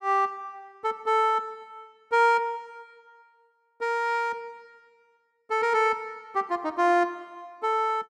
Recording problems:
none

